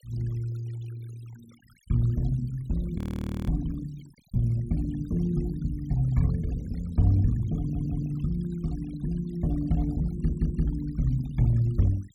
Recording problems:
denoising artefacts; signal-to-artefact ratio 26 dB
audio freezing; at 3 s for 0.5 s
audio stuttering; at 7.5 s and at 10 s

